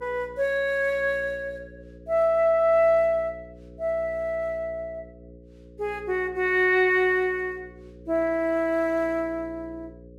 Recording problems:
hum; 60 Hz, harmonics up to 540 Hz, SNR 23 dB

